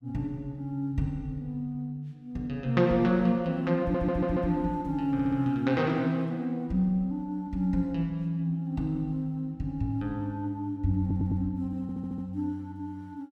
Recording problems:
audio stuttering; 4 times, first at 4 s

